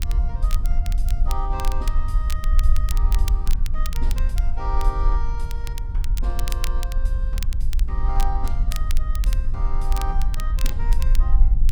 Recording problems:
rumble; below 46 Hz, strongest tone 20 Hz, SNR -11 dB
wind noise; below 110 Hz, SNR 2 dB
crackle; vinyl, SNR 4 dB

